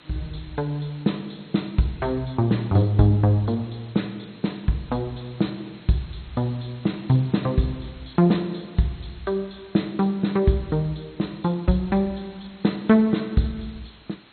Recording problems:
lossy compression; MP2, log-spectral distance 6 dB, nothing above 4.2 kHz
background hiss; SNR 25 dB

